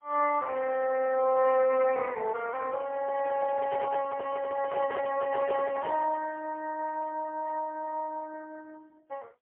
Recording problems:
phone line; 340 Hz to 2.6 kHz, AMR-NB, then MP3
microphone handling noise; from 3 to 6 s; peak -4 dB vs average level

